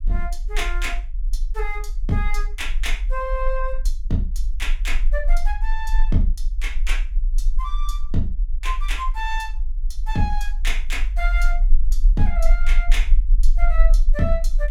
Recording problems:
rumble; below 36 Hz, strongest tone 20 Hz, SNR -4 dB

